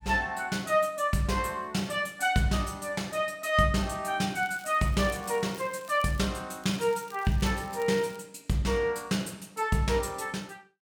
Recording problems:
crackle; from 4.5 to 6.5 s and from 6.5 to 8 s; loose cable, SNR 23 dB

